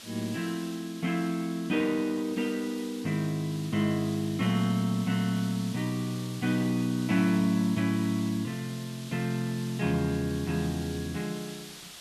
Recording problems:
hiss; SNR 15 dB

